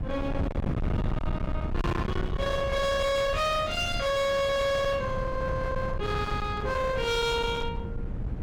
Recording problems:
distorted audio; hard clipping, signal-to-distortion ratio 7 dB
wind noise; below 280 Hz, SNR 5 dB

